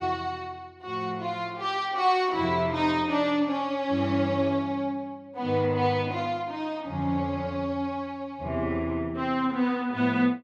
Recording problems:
none

